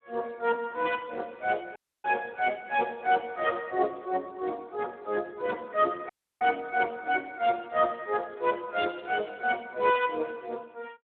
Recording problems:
telephone audio; 300 Hz to 3.4 kHz, Speex
dropout; at 2 s and at 6 s

